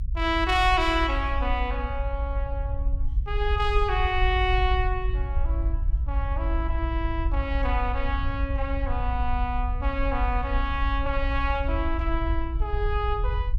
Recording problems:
rumble; below 58 Hz, SNR 1 dB

